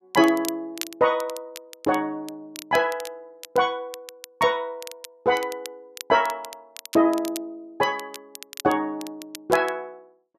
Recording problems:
crackle; vinyl, SNR 16 dB

